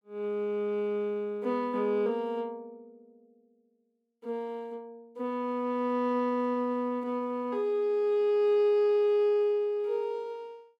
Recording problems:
none

